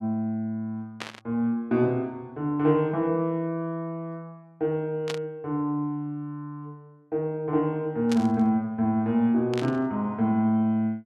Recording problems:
burst of static; 4 times, first at 1 s; peak -3 dB vs average level

